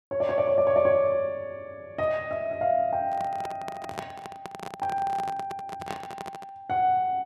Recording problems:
microphone handling noise; from 3 to 6.5 s; peak -3 dB vs average level

